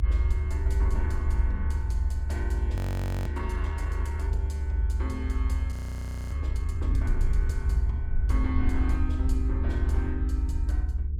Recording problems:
hum; 50 Hz, harmonics up to 450 Hz, SNR 7 dB
rumble; below 74 Hz, SNR -10 dB
frozen audio; at 3 s and at 5.5 s for 0.5 s

